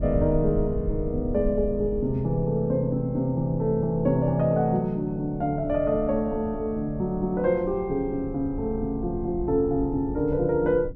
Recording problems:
rumble; below 100 Hz, SNR 12 dB

